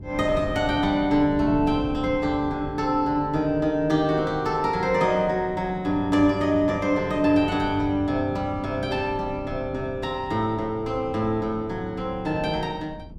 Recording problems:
wind on the microphone; below 200 Hz, SNR 14 dB

